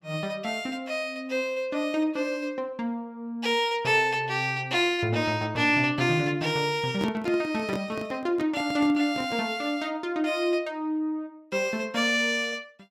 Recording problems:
microphone handling noise; from 7 to 9.5 s; peak -1 dB vs average level

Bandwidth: 16.5 kHz